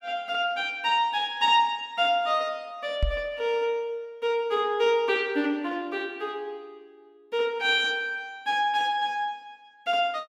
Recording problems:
microphone thump; at 3 s; peak +3 dB vs average level

